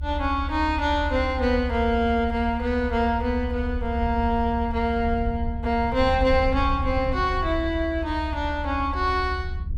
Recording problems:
rumble; below 74 Hz, SNR 6 dB

